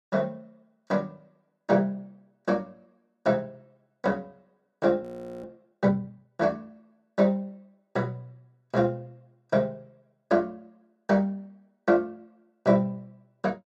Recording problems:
frozen audio; at 5 s

